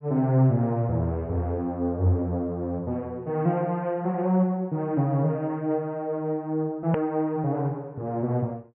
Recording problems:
treble cut off; nothing above 3.1 kHz
edit click; at 7 s

